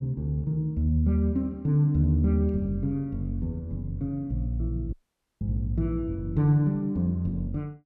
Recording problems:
dropout; at 5 s

